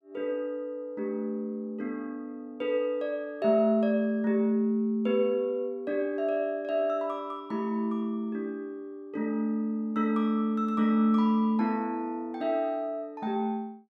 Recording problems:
none

